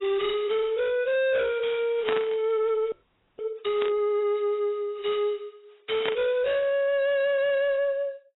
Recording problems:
lossy compression; AAC, log-spectral distance 2 dB, nothing above 3.8 kHz
distorted audio; soft clipping, signal-to-distortion ratio 6 dB
burst of static; at 2 s, at 4 s and at 6 s; peak 0 dB vs average level
audio freezing; at 3 s

